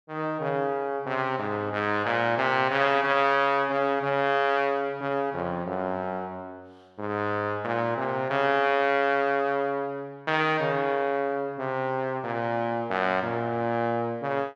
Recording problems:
none

